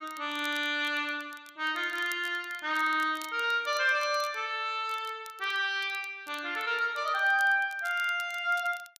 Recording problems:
crackle; vinyl, SNR 22 dB

